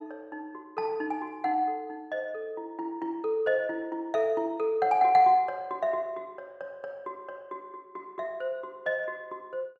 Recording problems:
none

